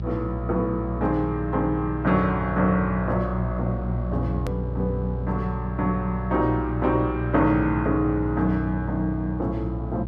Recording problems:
hum; 60 Hz, harmonics up to 420 Hz, SNR 5 dB
hard cut with a click; at 4.5 s

